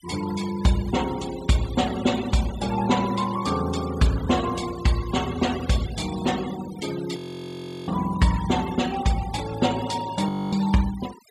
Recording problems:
denoising artefacts; signal-to-artefact ratio 14 dB
frozen audio; at 7 s for 0.5 s and at 10 s

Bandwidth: 14.5 kHz